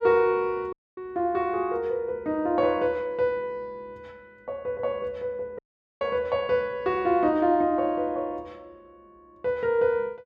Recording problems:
audio cutting out; at 0.5 s and at 5.5 s

